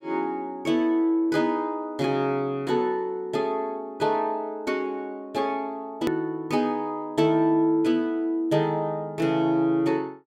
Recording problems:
edit click; at 6 s

